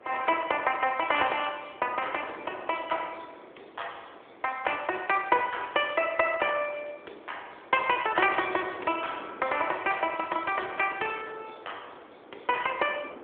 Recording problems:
telephone audio; 300 Hz to 3.4 kHz, AMR-NB
wind on the microphone; below 960 Hz, SNR 19 dB

